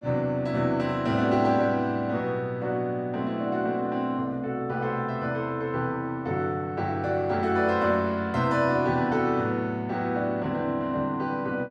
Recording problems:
none

